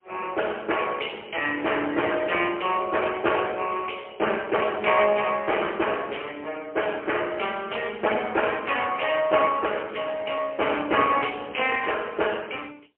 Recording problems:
telephone audio; 300 Hz to 3.2 kHz, AMR-NB, then MP3

